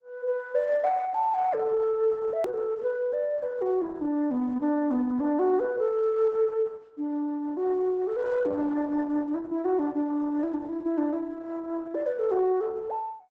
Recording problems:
lossy compression; Opus, log-spectral distance 2 dB, nothing above 16.6 kHz
hard cut with a click; at 2.5 s

